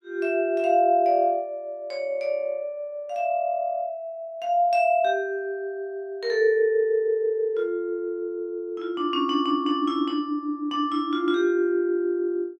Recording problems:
none

